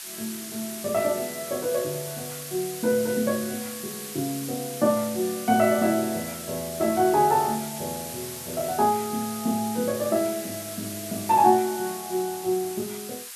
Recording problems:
hiss; SNR 9 dB

